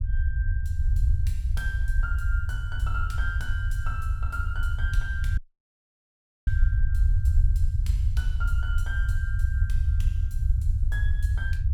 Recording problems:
rumble; below 78 Hz, SNR -10 dB
dropout; at 5.5 s for 1 s

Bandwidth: 17.5 kHz